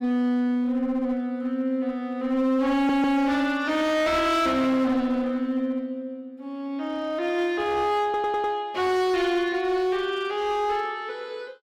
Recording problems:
distorted audio; hard clipping, uneven, signal-to-distortion ratio 11 dB
audio stuttering; at 3 s and at 8 s

